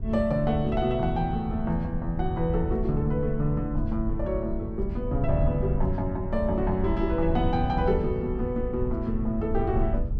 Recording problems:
low-frequency rumble; below 88 Hz, SNR 5 dB

